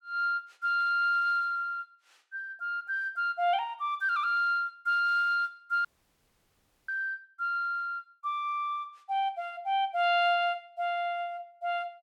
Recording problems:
dropout; at 6 s for 1 s

